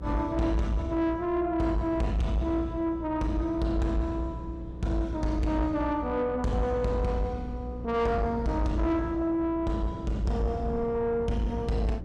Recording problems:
distortion; soft clipping, signal-to-distortion ratio 11 dB
hum; 60 Hz, harmonics up to 540 Hz, SNR 13 dB
wind on the microphone; below 240 Hz, SNR 16 dB

